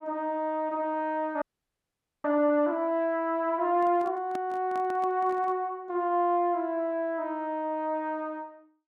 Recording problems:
frozen audio; at 1.5 s for 1 s
handling noise; from 3.5 to 5.5 s; peak -7 dB vs average level

